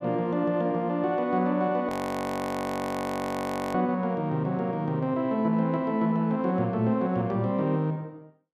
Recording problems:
frozen audio; at 2 s for 2 s

